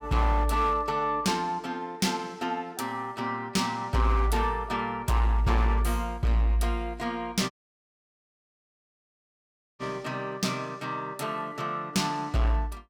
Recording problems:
distorted audio; hard clipping, signal-to-distortion ratio 12 dB
dropout; at 7.5 s for 2.5 s

